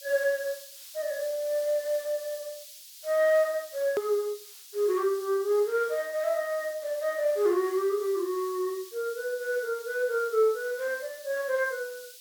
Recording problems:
background hiss; SNR 17 dB
edit click; at 4 s

